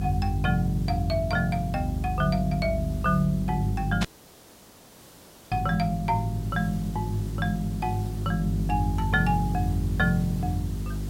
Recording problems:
hum; 50 Hz, harmonics up to 400 Hz, SNR 4 dB
hiss; SNR 20 dB
static burst; at 4 s; peak +1 dB vs average level
audio cutting out; at 4 s for 1.5 s

